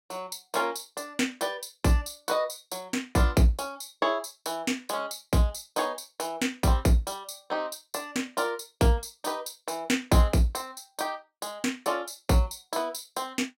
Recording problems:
none

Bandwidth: 16 kHz